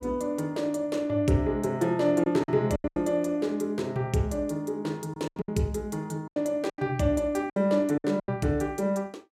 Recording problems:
lost packets; 8% of the sound replaced, filled with silence

